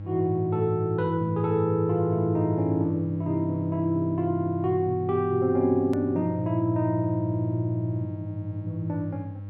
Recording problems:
electrical hum; 50 Hz, harmonics up to 600 Hz, SNR 11 dB
hard cut with a click; at 6 s

